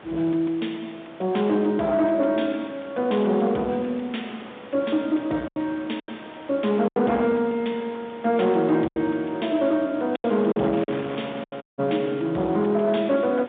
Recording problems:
phone line; 170 Hz to 3.6 kHz, G.711
distorted audio; soft clipping, signal-to-distortion ratio 11 dB
wind noise; below 2 kHz, SNR 19 dB
lost packets; 4% of the sound replaced, filled with silence
dropout; at 12 s

